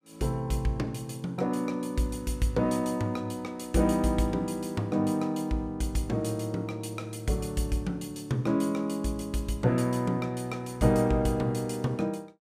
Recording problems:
none

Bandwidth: 15.5 kHz